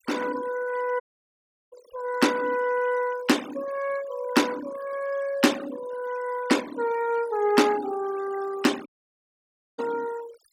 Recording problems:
denoising artefacts; signal-to-artefact ratio 15 dB
dropout; at 1 s for 0.5 s and at 9 s for 1 s

